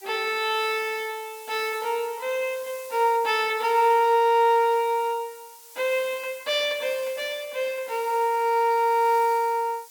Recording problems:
hiss; slope +3 dB per octave, SNR 20 dB

